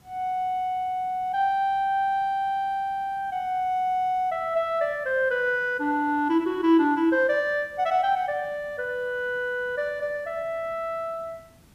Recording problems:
background hiss; SNR 30 dB

